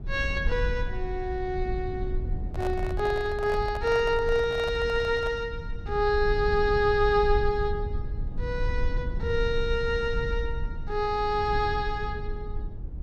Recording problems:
rumble; below 74 Hz, SNR 7 dB
microphone handling noise; from 2.5 to 5.5 s; peak -6 dB vs average level

